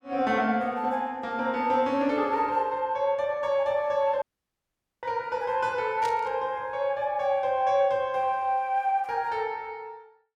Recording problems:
dropout; at 4 s for 1 s
burst of static; at 6 s; peak -9 dB vs average level

